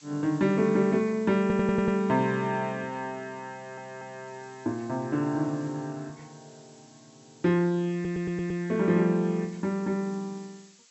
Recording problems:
treble missing; nothing above 7.8 kHz
background hiss; slope +3 dB per octave, SNR 27 dB
audio stuttering; at 1.5 s, at 3.5 s and at 8 s

